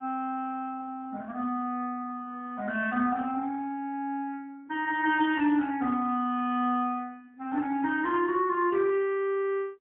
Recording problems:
phone line; 260 Hz to 3.4 kHz, AMR-NB, then MP3

